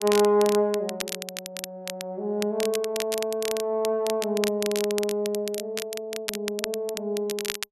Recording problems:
crackle; vinyl, SNR 8 dB

